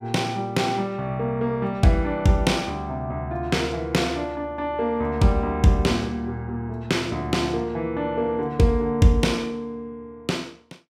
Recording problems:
none

